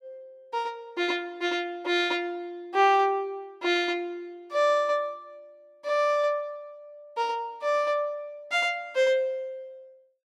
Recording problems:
none

